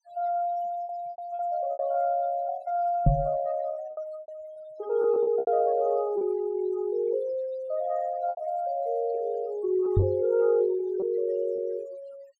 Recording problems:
noise reduction artefacts; signal-to-artefact ratio 22 dB
lost packets; 7% of the sound replaced, filled with repeated pitch periods
microphone bump; at 3 s and at 10 s; peak +9 dB vs average level

